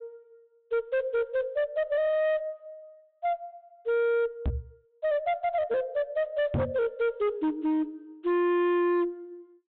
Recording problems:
treble missing; nothing above 4 kHz
distortion; hard clipping, uneven, signal-to-distortion ratio 7 dB
microphone thump; at 4.5 s and at 6.5 s; peak +3 dB vs average level

